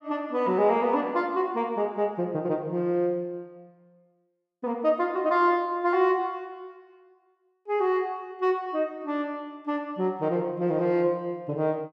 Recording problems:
none

